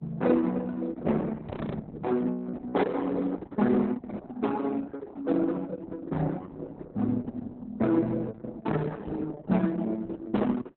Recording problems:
lossy codec; Opus, then Opus, log-spectral distance 3 dB, nothing above 4 kHz
frozen audio; at 1.5 s
microphone bump; at 9 s; peak -2 dB vs average level

